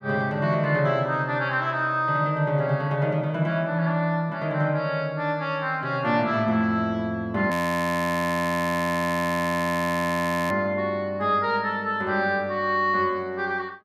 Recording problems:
audio freezing; at 7.5 s for 3 s

